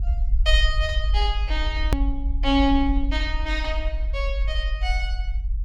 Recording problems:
low-frequency rumble; below 52 Hz, strongest tone 46 Hz, SNR 0 dB
hard cut with a click; at 2 s

